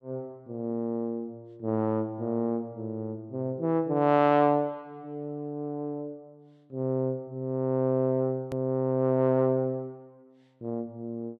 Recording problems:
click at an edit; at 8.5 s

